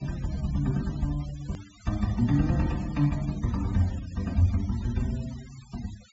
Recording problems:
treble missing; nothing above 8 kHz
noise reduction artefacts; signal-to-artefact ratio 20 dB
hard cut with a click; at 1.5 s

